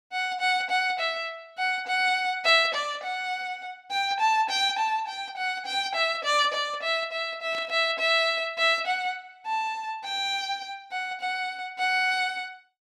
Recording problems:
burst of static; at 2.5 s and at 7.5 s; peak -13 dB vs average level

